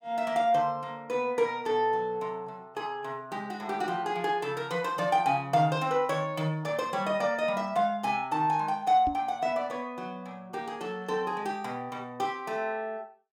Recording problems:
microphone thump; at 9 s; peak -3 dB vs average level

